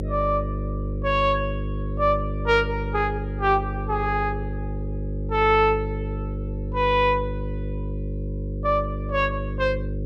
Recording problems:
hum; 50 Hz, harmonics up to 550 Hz, SNR 6 dB

